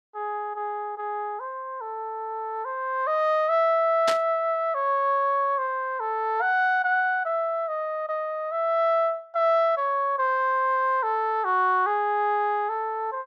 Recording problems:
burst of static; at 4 s; peak +1 dB vs average level

